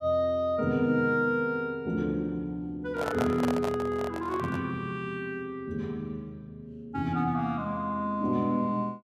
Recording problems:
microphone handling noise; from 3 to 4.5 s; peak +1 dB vs average level

